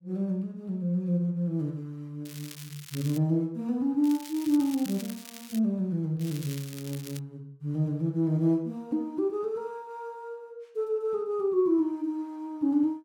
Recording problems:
crackling; at 2.5 s, from 4 to 5.5 s and from 6 to 7 s; loose cable, SNR 15 dB

